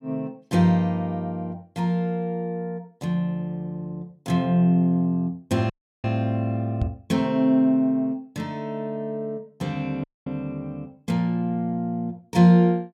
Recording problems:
dropout; at 5.5 s and at 10 s
microphone bump; at 7 s; peak +2 dB vs average level

